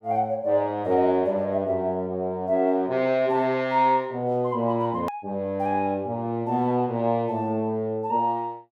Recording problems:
edit click; at 5 s

